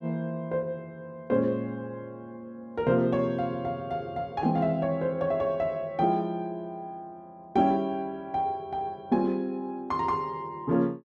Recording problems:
none

